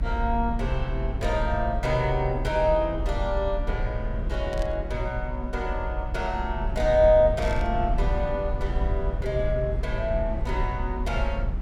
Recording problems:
rumble; below 66 Hz, strongest tone 36 Hz, SNR 4 dB
burst of static; at 4.5 s and at 7.5 s; peak -11 dB vs average level

